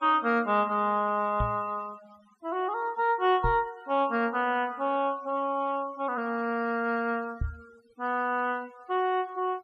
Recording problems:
noise reduction artefacts; signal-to-artefact ratio 26 dB
knock on the microphone; at 1.5 s, at 3.5 s and at 7.5 s; peak +1 dB vs average level

